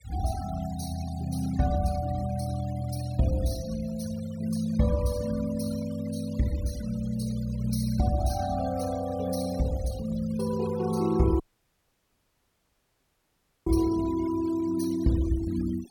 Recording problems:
noise reduction artefacts; signal-to-artefact ratio 16 dB
dropout; at 11 s for 2.5 s

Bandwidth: 17.5 kHz